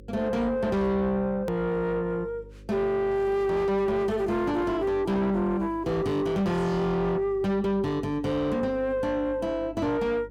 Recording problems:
distorted audio; soft clipping, signal-to-distortion ratio 7 dB
mains hum; 50 Hz, harmonics up to 550 Hz, SNR 21 dB
hard cut with a click; at 1.5 s

